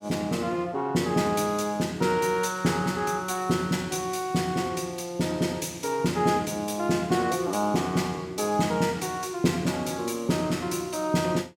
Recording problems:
none

